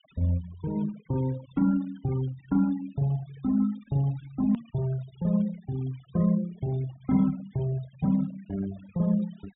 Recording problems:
treble missing; nothing above 4 kHz
noise reduction artefacts; signal-to-artefact ratio 22 dB
edit click; at 4.5 s

